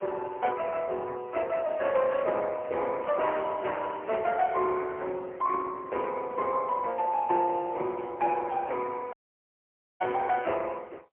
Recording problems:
phone line; 340 Hz to 2.2 kHz, AMR-NB, then MP3
static burst; at 3 s and at 8 s; peak -19 dB vs average level
audio cutting out; at 9 s for 1 s

